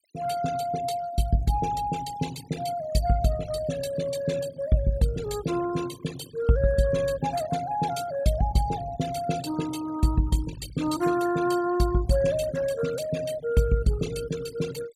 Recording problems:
noise reduction artefacts; signal-to-artefact ratio 16 dB

